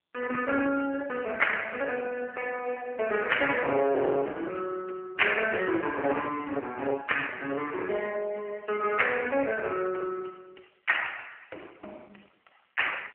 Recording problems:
phone line; 300 Hz to 3 kHz, AMR-NB
distortion; hard clipping, uneven, signal-to-distortion ratio 11 dB

